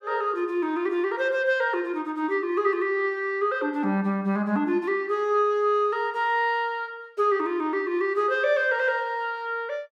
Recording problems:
none

